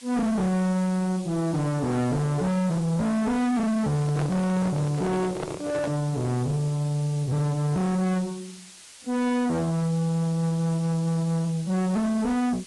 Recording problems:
codec artefacts; AAC, log-spectral distance 5 dB, nothing above 10.4 kHz
distorted audio; soft clipping, signal-to-distortion ratio 6 dB
hiss; slope +2 dB per octave, SNR 19 dB
handling noise; from 4 to 6 s; peak -3 dB vs average level

